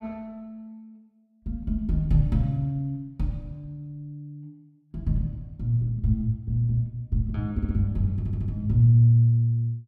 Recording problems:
audio stuttering; at 7.5 s and at 8 s

